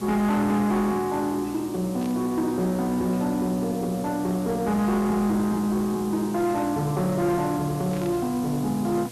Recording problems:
distorted audio; soft clipping, signal-to-distortion ratio 11 dB
hum; 60 Hz, harmonics up to 1.7 kHz, SNR 18 dB
hiss; slope +1 dB per octave, SNR 18 dB
static burst; at 2 s and at 8 s; peak -14 dB vs average level

